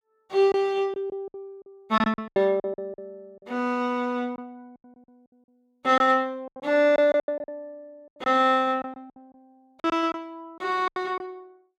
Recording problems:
lost packets; 12% of the sound replaced, filled with silence

